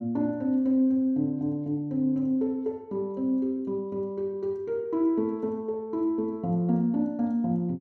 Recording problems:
none

